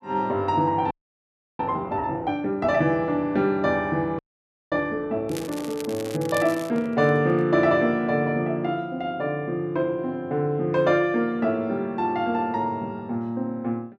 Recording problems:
audio freezing; at 1 s for 0.5 s and at 4 s for 0.5 s
crackling; from 5.5 to 6.5 s; loose cable, SNR 16 dB
handling noise; from 5.5 to 7.5 s; peak -11 dB vs average level

